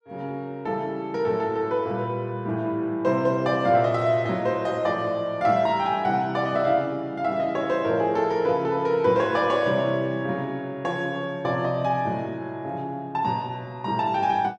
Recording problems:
none

